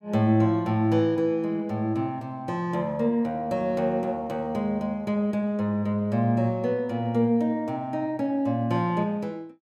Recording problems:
none

